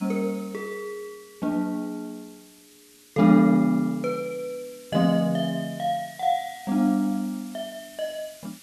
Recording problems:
background hiss; SNR 23 dB

